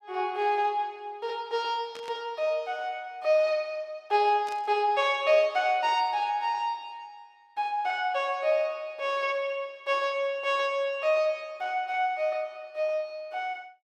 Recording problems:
static burst; at 2 s and at 4.5 s; peak -12 dB vs average level

